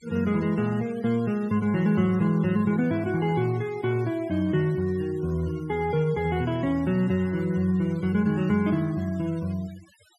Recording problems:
denoising artefacts; signal-to-artefact ratio 23 dB

